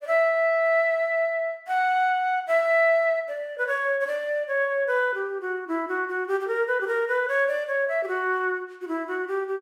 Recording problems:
none

